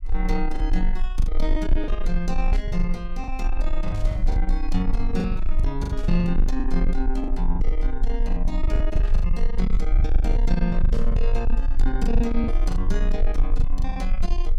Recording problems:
distorted audio; soft clipping, signal-to-distortion ratio 12 dB
rumble; below 36 Hz, strongest tone 20 Hz, SNR -2 dB
lost packets; 13% of the sound replaced, filled with the last packet
burst of static; 5 times, first at 2.5 s; peak -12 dB vs average level

